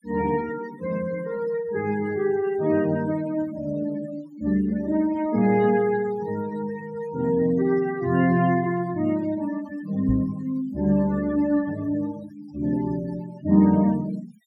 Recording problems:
denoising artefacts; signal-to-artefact ratio 19 dB
microphone bump; at 10 s; peak +2 dB vs average level

